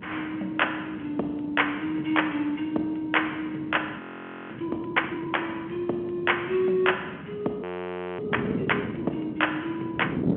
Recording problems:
phone line; 220 Hz to 3.2 kHz, G.711
wind noise; below 410 Hz, SNR 9 dB
audio freezing; at 4 s for 0.5 s and at 7.5 s for 0.5 s

